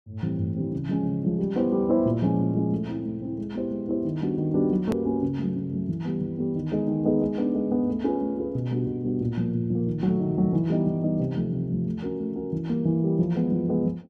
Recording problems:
hard cut with a click; at 5 s

